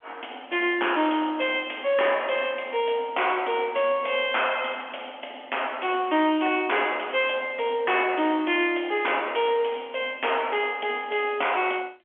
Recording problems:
telephone audio; 190 Hz to 3.4 kHz, G.711
distorted audio; soft clipping, signal-to-distortion ratio 10 dB

